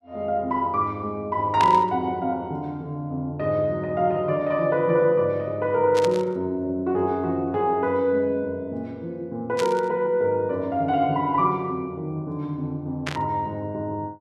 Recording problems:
burst of static; 4 times, first at 1.5 s; peak -1 dB vs average level

